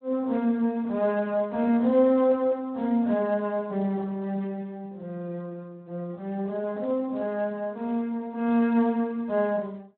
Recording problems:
telephone audio; 170 Hz to 3.1 kHz, Speex

